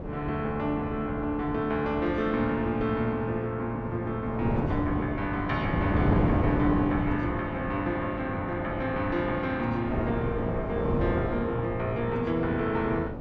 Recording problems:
wind noise; below 430 Hz, SNR 4 dB

